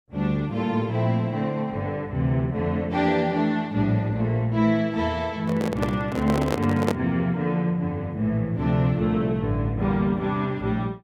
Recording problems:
handling noise; from 5.5 to 7 s; peak +3 dB vs average level

